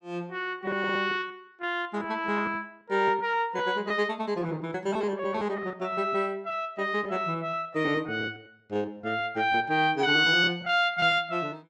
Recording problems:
lost packets; 10% of the sound replaced, filled with repeated pitch periods

